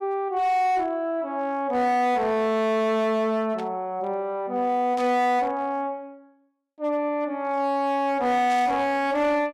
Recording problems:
distortion; hard clipping, signal-to-distortion ratio 11 dB
burst of static; at 3.5 s, at 5 s and at 8.5 s; peak -12 dB vs average level

